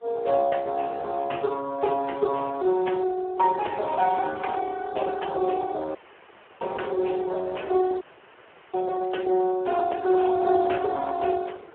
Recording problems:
phone line; 300 Hz to 2.1 kHz, Speex
wind noise; below 1.1 kHz, SNR 22 dB
dropout; at 6 s for 0.5 s and at 8 s for 0.5 s

